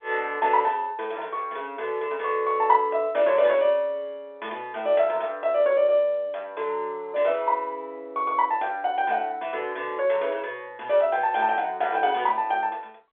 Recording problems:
telephone audio; 300 Hz to 3.7 kHz, G.711

